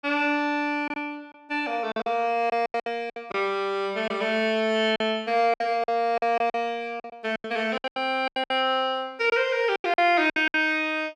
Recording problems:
packet loss; 12% of the sound replaced, filled with silence

